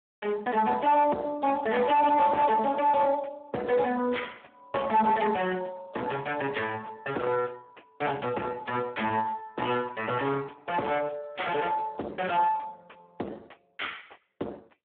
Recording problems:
telephone audio; 240 Hz to 2.9 kHz, Speex
distorted audio; soft clipping, signal-to-distortion ratio 7 dB

